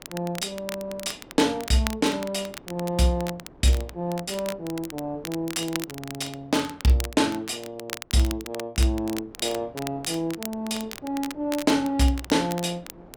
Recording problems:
wind noise; below 610 Hz, SNR 24 dB
crackle; vinyl, SNR 12 dB

